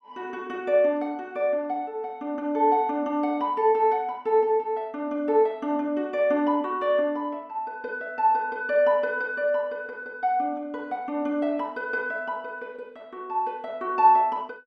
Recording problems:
none

